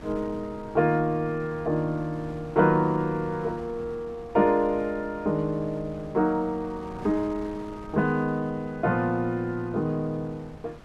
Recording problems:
wind noise; below 590 Hz, SNR 19 dB

